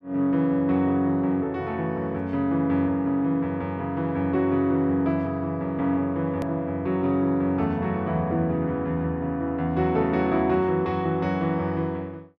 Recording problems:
click at an edit; at 6.5 s

